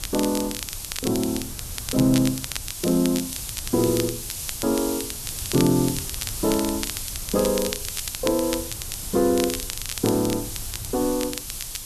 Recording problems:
background hiss; SNR 7 dB
wind noise; below 120 Hz, SNR 17 dB
crackling; vinyl, SNR 9 dB

